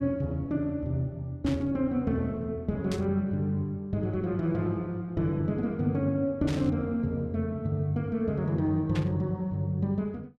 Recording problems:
static burst; 4 times, first at 1.5 s; peak -5 dB vs average level

